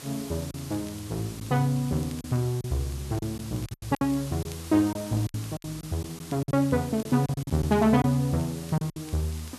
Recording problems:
hiss; slope -1 dB per octave, SNR 15 dB
crackling; vinyl, SNR 28 dB
packet loss; 9% of the sound replaced, filled with silence

